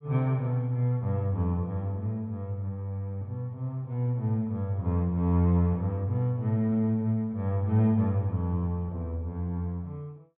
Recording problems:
treble missing; nothing above 4 kHz

